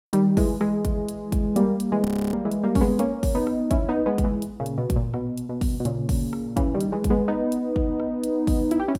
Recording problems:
frozen audio; at 2 s

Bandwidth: 16 kHz